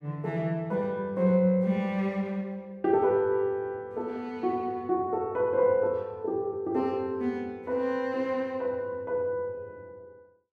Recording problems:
none

